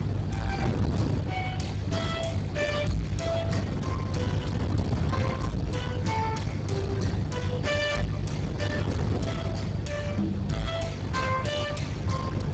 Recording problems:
codec artefacts; Speex, log-spectral distance 4 dB, nothing above 7.6 kHz
distorted audio; soft clipping, signal-to-distortion ratio 7 dB
electrical hum; 50 Hz, harmonics up to 350 Hz, SNR 4 dB
wind noise; below 380 Hz, SNR 1 dB

